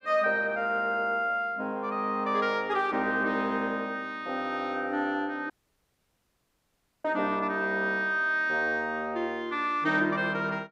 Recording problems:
audio cutting out; at 5.5 s for 1.5 s

